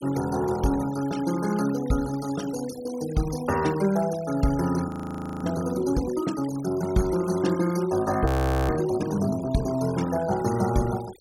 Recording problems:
denoising artefacts; signal-to-artefact ratio 16 dB
audio freezing; at 5 s for 0.5 s and at 8.5 s

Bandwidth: 16 kHz